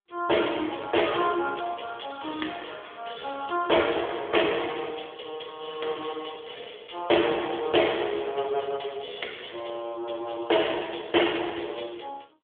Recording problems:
phone line; 280 Hz to 3.5 kHz, AMR-NB

